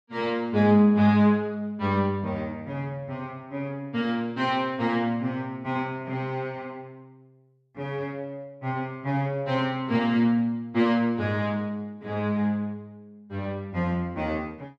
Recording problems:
none

